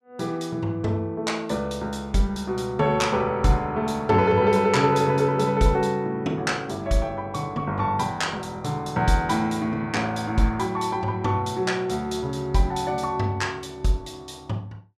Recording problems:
none

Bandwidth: 14.5 kHz